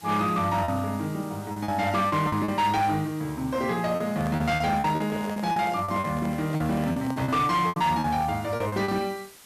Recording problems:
distorted audio; hard clipping, uneven, signal-to-distortion ratio 12 dB
hiss; slope 0 dB per octave, SNR 22 dB
lost packets; 11% of the sound replaced, filled with repeated pitch periods
microphone handling noise; from 4 to 7.5 s; peak -7 dB vs average level

